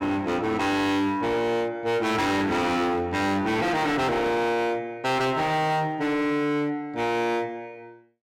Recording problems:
distortion; hard clipping, uneven, signal-to-distortion ratio 7 dB

